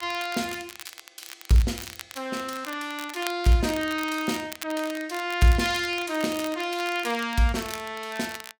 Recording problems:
crackling; vinyl, SNR 14 dB

